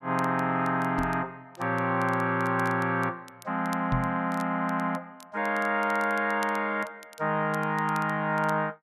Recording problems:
crackling; vinyl, SNR 24 dB
knock on the microphone; at 1 s and at 4 s; peak +2 dB vs average level

